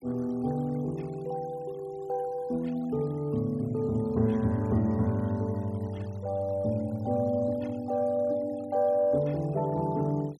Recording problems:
noise reduction artefacts; signal-to-artefact ratio 27 dB

